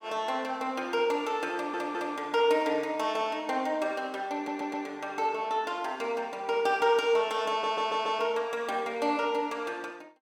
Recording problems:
stutter; at 1.5 s, at 4.5 s and at 7.5 s

